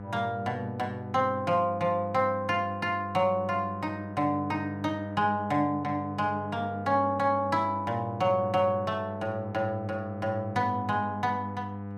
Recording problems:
electrical hum; 50 Hz, harmonics up to 1.5 kHz, SNR 10 dB

